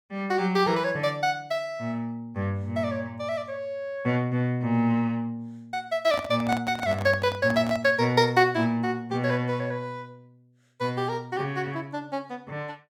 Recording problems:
handling noise; from 6 to 8 s; peak -2 dB vs average level

